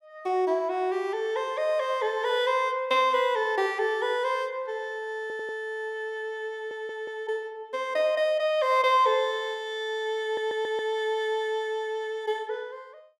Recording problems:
audio stuttering; at 5 s, at 6.5 s and at 10 s

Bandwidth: 15.5 kHz